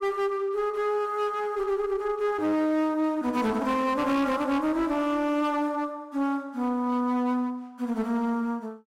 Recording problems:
distortion; hard clipping, uneven, signal-to-distortion ratio 11 dB

